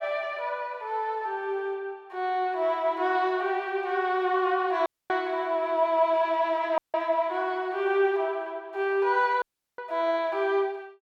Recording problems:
audio cutting out; at 5 s, at 7 s and at 9.5 s

